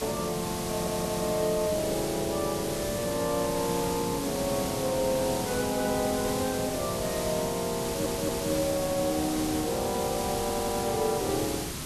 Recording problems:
background hiss; SNR 4 dB
audio stuttering; at 0.5 s, at 8 s and at 10 s

